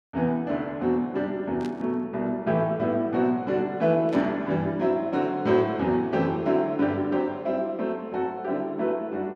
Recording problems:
static burst; at 1.5 s and at 4 s; peak -12 dB vs average level

